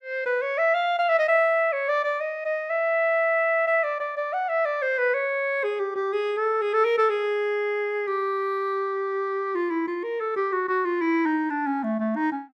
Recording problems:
none

